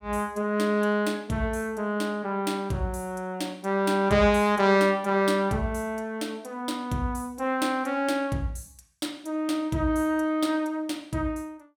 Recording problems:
none

